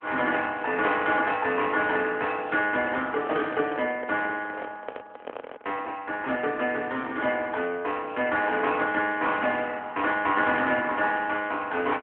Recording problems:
phone line; 280 Hz to 3.3 kHz, AMR-NB
handling noise; from 2.5 to 6 s; peak -7 dB vs average level

